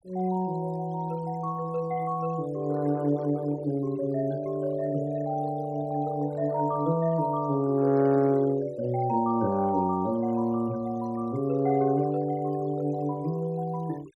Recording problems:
denoising artefacts; signal-to-artefact ratio 24 dB

